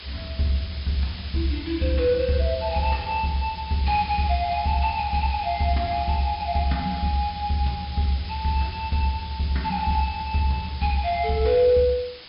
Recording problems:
treble cut off; nothing above 5.5 kHz
background hiss; slope +1 dB per octave, SNR 15 dB

